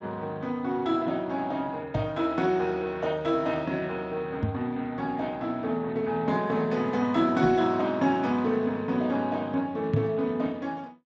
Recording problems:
codec artefacts; Speex, log-spectral distance 2 dB, nothing above 7.3 kHz
microphone bump; 4 times, first at 2 s; peak +5 dB vs average level

